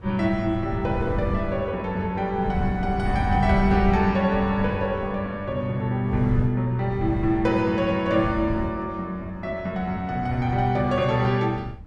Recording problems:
wind on the microphone; below 140 Hz, SNR 8 dB

